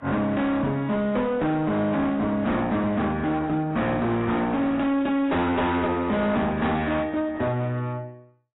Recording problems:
codec artefacts; AAC, log-spectral distance 2 dB, nothing above 3.8 kHz
distortion; hard clipping, uneven, signal-to-distortion ratio 7 dB

